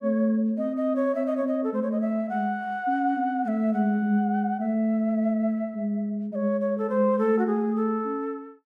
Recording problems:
none

